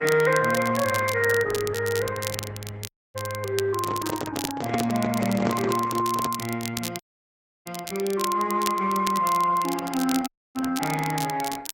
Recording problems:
lossy compression; Opus, then MP2, log-spectral distance 3 dB
crackle; vinyl, SNR 10 dB
dropout; at 3 s, at 7 s for 0.5 s and at 10 s
microphone handling noise; from 4 to 6.5 s; peak +2 dB vs average level

